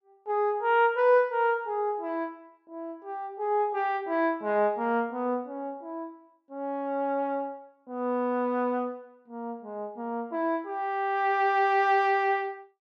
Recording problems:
none

